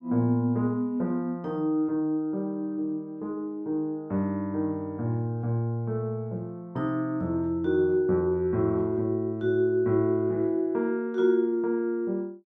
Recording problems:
none

